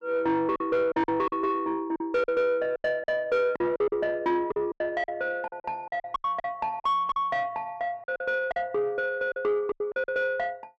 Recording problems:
distorted audio; soft clipping, signal-to-distortion ratio 11 dB
packet loss; 12% of the sound replaced, filled with silence

